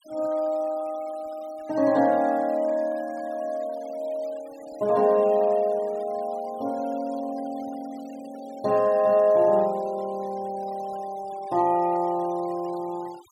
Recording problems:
noise reduction artefacts; signal-to-artefact ratio 24 dB

